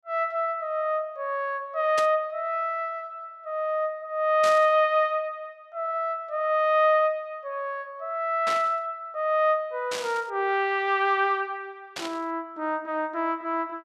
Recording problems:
static burst; 5 times, first at 2 s; peak -3 dB vs average level

